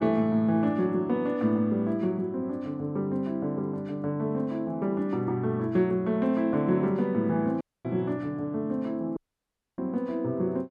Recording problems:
dropout; at 7.5 s and at 9 s for 0.5 s

